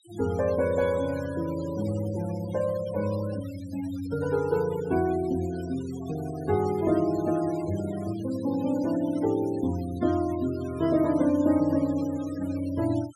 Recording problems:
denoising artefacts; signal-to-artefact ratio 18 dB

